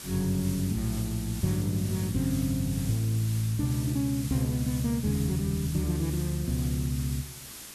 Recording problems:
hiss; SNR 12 dB

